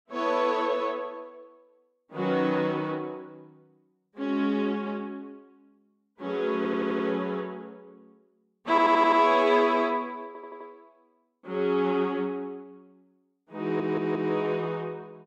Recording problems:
stutter; 4 times, first at 6.5 s

